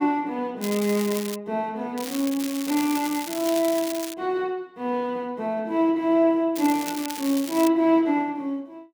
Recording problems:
crackling; at 0.5 s, from 2 to 4 s and from 6.5 to 7.5 s; loose cable, SNR 10 dB

